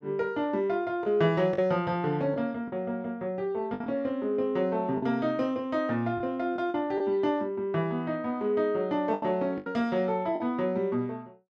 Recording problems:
lost packets; 5% of the sound replaced, filled with the last packet

